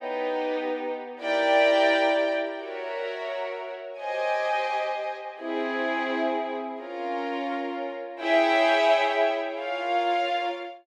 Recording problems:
none

